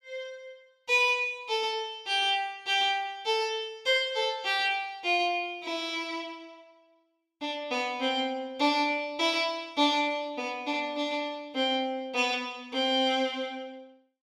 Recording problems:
none

